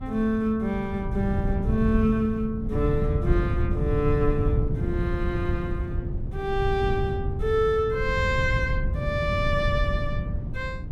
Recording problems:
wind on the microphone; below 130 Hz, SNR 2 dB

